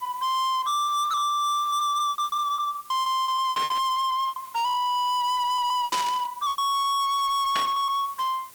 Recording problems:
distorted audio; soft clipping, signal-to-distortion ratio 7 dB
background hiss; slope 0 dB per octave, SNR 22 dB
packet loss; 11% of the sound replaced, filled with repeated pitch periods
static burst; at 3.5 s, at 6 s and at 7.5 s; peak 0 dB vs average level

